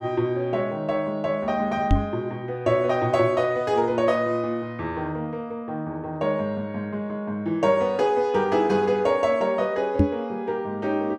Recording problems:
knock on the microphone; at 2 s and at 10 s; peak +9 dB vs average level

